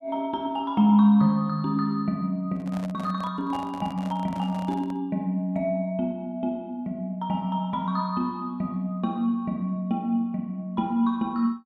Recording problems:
microphone handling noise; from 2.5 to 5 s; peak -10 dB vs average level

